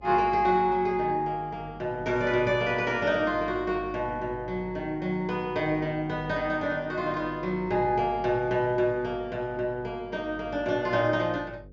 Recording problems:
low-pass filter; nothing above 7.3 kHz
electrical hum; 50 Hz, harmonics up to 550 Hz, SNR 20 dB

